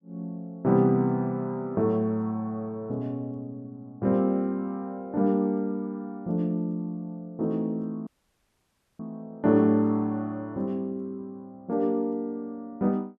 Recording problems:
audio cutting out; at 8 s for 1 s

